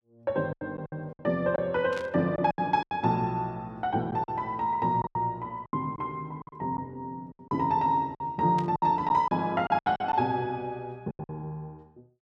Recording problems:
packet loss; 11% of the sound replaced, filled with silence
burst of static; at 2 s and at 8.5 s; peak -9 dB vs average level

